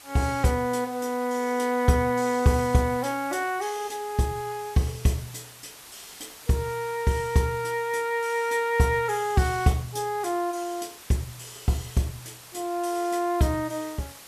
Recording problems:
background hiss; slope 0 dB per octave, SNR 18 dB

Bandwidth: 14 kHz